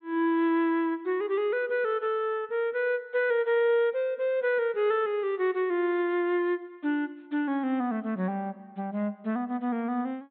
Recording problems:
treble cut off; nothing above 4 kHz

